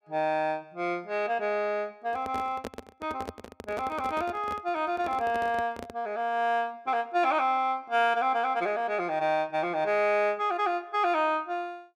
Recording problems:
microphone handling noise; from 2 to 6 s; peak -4 dB vs average level

